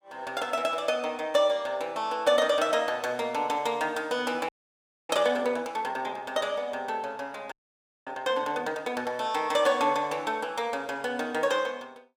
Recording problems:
audio freezing; at 4.5 s for 0.5 s and at 7.5 s for 0.5 s

